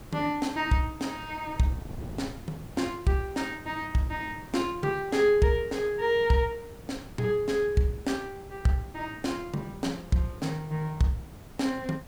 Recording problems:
background hiss; slope -4 dB per octave, SNR 23 dB
wind on the microphone; below 270 Hz, SNR 18 dB

